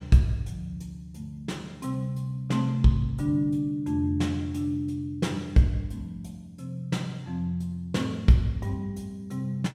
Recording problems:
none

